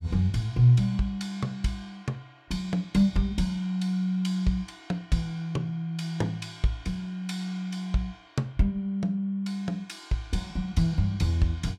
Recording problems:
none

